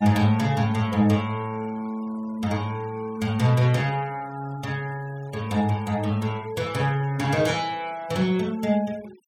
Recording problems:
denoising artefacts; signal-to-artefact ratio 23 dB

